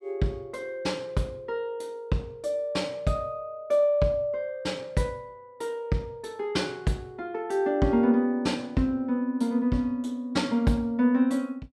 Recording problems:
none

